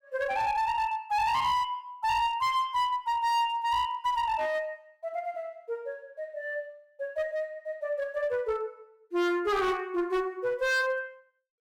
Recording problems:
distortion; hard clipping, uneven, signal-to-distortion ratio 10 dB

